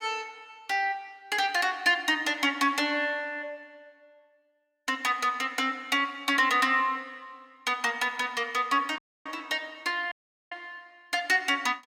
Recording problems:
audio cutting out; at 9 s and at 10 s

